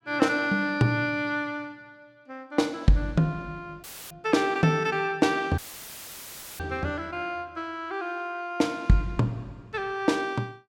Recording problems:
audio cutting out; at 4 s and at 5.5 s for 1 s; filled with static

